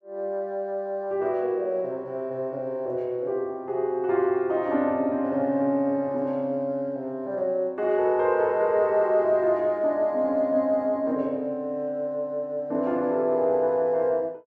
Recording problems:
none

